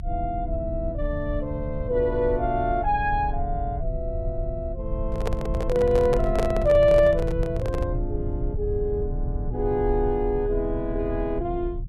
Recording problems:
rumble; below 88 Hz, strongest tone 34 Hz, SNR 6 dB
microphone handling noise; from 5 to 8 s; peak +1 dB vs average level

